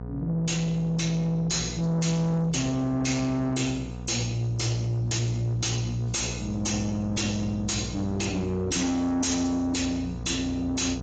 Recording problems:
lossy codec; AAC, log-spectral distance 5 dB, nothing above 16.5 kHz
distortion; soft clipping, signal-to-distortion ratio 7 dB
hum; 60 Hz, harmonics up to 1 kHz, SNR 10 dB

